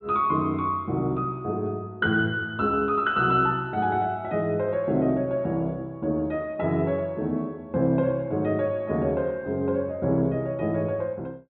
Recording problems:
treble missing; nothing above 4.3 kHz

